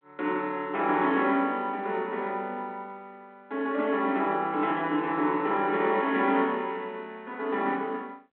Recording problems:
telephone audio; 220 Hz to 3.6 kHz, G.726

